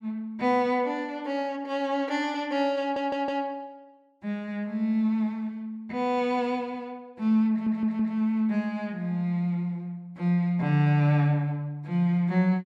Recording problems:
audio stuttering; at 3 s and at 7.5 s

